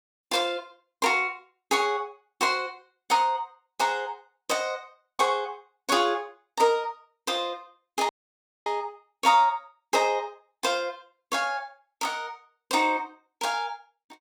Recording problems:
audio cutting out; at 8 s for 0.5 s

